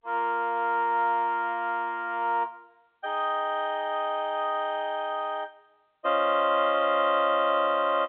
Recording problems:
telephone audio; 300 Hz to 3.7 kHz, G.711

